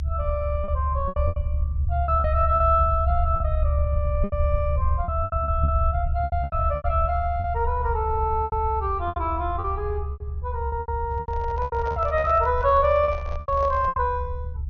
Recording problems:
treble cut off; nothing above 6.5 kHz
low-frequency rumble; below 74 Hz, strongest tone 72 Hz, SNR 3 dB
packet loss; 13% of the sound replaced, filled with repeated pitch periods
handling noise; from 11 to 14 s; peak -8 dB vs average level

